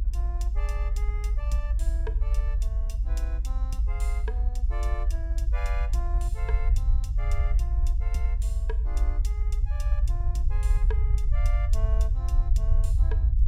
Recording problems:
hum; 60 Hz, harmonics up to 540 Hz, SNR 18 dB
low-frequency rumble; below 54 Hz, SNR -13 dB

